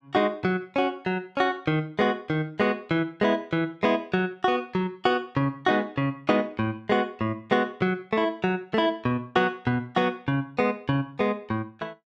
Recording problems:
none

